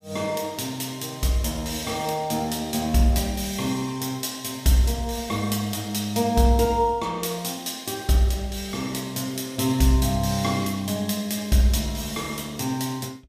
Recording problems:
none

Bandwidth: 15.5 kHz